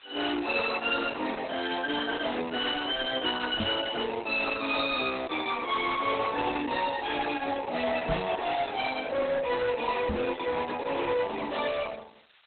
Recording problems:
codec artefacts; Opus, log-spectral distance 11 dB, nothing above 4 kHz
distorted audio; hard clipping, uneven, signal-to-distortion ratio 10 dB
background hiss; SNR 27 dB
microphone bump; at 3.5 s, at 8 s and at 10 s; peak +3 dB vs average level

